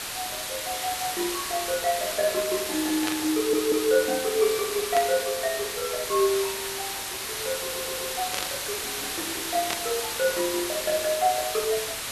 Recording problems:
hiss; slope 0 dB per octave, SNR 2 dB
static burst; 4 times, first at 3 s; peak +2 dB vs average level
stutter; at 3.5 s and at 7.5 s

